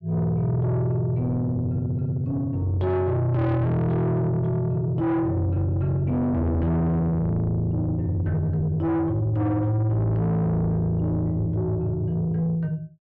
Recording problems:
distorted audio; soft clipping, signal-to-distortion ratio 7 dB

